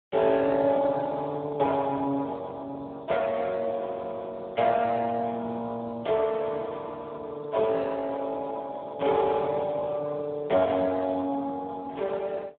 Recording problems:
telephone audio; 260 Hz to 2.1 kHz, Speex

